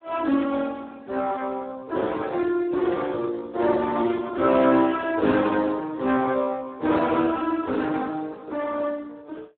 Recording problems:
telephone audio; 240 Hz to 2.1 kHz, Speex

